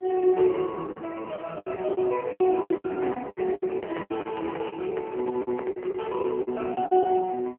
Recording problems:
telephone audio; 260 Hz to 3 kHz, AMR-NB
packet loss; 16% of the sound replaced, filled with the last packet
handling noise; from 3 to 6 s; peak -2 dB vs average level

